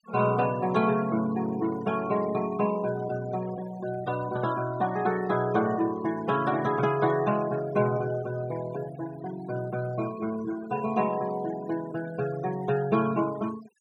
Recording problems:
noise reduction artefacts; signal-to-artefact ratio 16 dB

